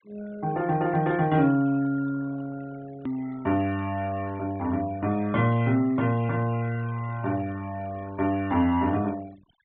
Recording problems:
low-pass filter; nothing above 4 kHz
denoising artefacts; signal-to-artefact ratio 22 dB
hard cut with a click; at 3 s

